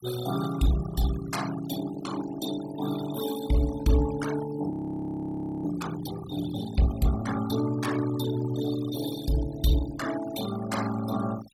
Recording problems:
denoising artefacts; signal-to-artefact ratio 11 dB
audio freezing; at 4.5 s for 1 s

